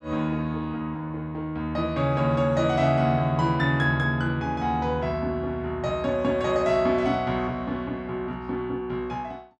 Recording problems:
none

